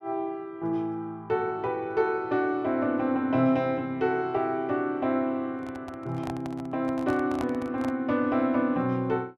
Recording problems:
microphone handling noise; from 5.5 to 8 s; peak -4 dB vs average level

